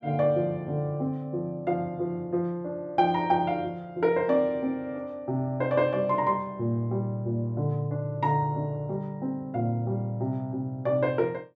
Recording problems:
none

